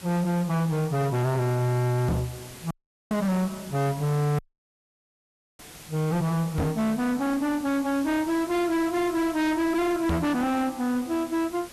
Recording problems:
distortion; hard clipping, uneven, signal-to-distortion ratio 7 dB
hiss; slope -2 dB per octave, SNR 18 dB
knock on the microphone; at 2 s, at 6.5 s and at 10 s; peak +5 dB vs average level
dropout; at 2.5 s and at 4.5 s for 1 s

